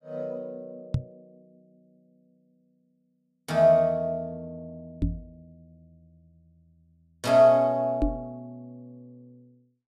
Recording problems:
microphone thump; at 1 s, at 5 s and at 8 s; peak +2 dB vs average level

